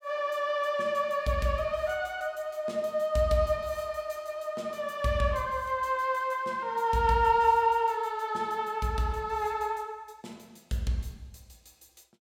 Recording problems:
none

